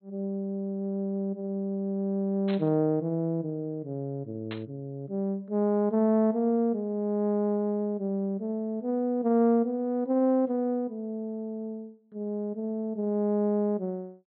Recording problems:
low-pass filter; nothing above 4.1 kHz
burst of static; at 2.5 s and at 4.5 s; peak -8 dB vs average level

